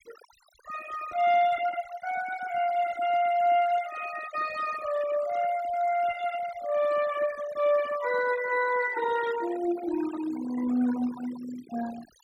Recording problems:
denoising artefacts; signal-to-artefact ratio 15 dB

